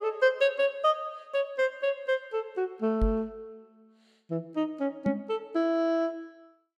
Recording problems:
microphone thump; at 3 s and at 5 s; peak +5 dB vs average level

